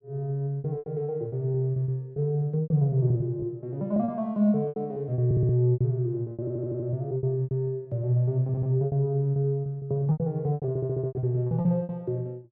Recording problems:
packet loss; 16% of the sound replaced, filled with repeated pitch periods
stutter; 4 times, first at 5.5 s

